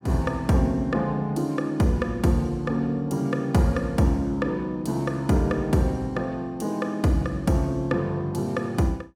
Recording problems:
none

